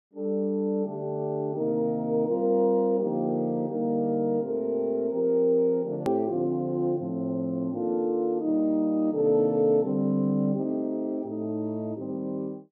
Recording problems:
click at an edit; at 6 s

